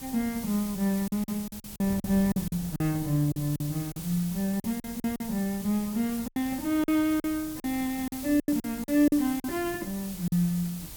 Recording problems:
background hiss; slope +1 dB per octave, SNR 12 dB
wind noise; below 200 Hz, SNR 19 dB
lost packets; 11% of the sound replaced, filled with silence

